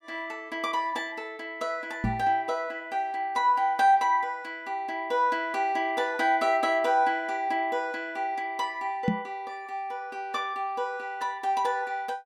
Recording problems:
knock on the microphone; at 2 s and at 9 s; peak +5 dB vs average level

